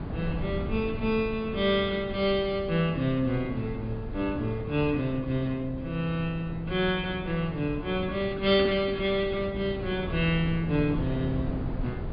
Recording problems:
treble missing; nothing above 4.9 kHz
wind noise; below 230 Hz, SNR 9 dB

